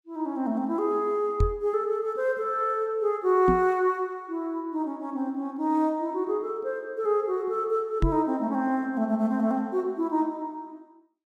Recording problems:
microphone bump; at 1.5 s, at 3.5 s and at 8 s; peak +5 dB vs average level

